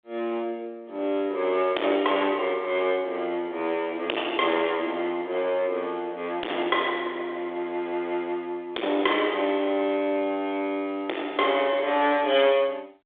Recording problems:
phone line; 300 Hz to 3.6 kHz, G.726
distortion; hard clipping, uneven, signal-to-distortion ratio 8 dB

